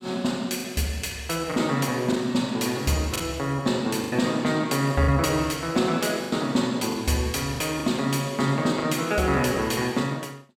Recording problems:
packet loss; 5% of the sound replaced, filled with the last packet

